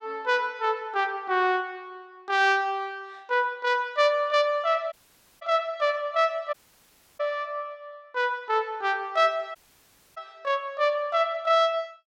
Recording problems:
audio cutting out; at 5 s, at 6.5 s for 0.5 s and at 9.5 s for 0.5 s

